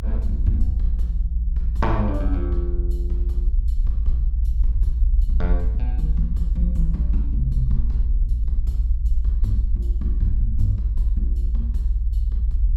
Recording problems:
rumble; below 58 Hz, SNR -7 dB

